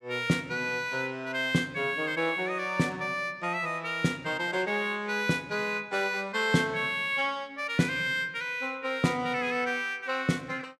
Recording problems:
none

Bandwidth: 14.5 kHz